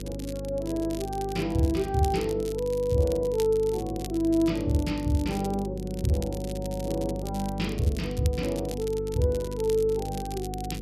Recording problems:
hum; 50 Hz, harmonics up to 500 Hz, SNR 8 dB
crackling; vinyl, SNR 17 dB

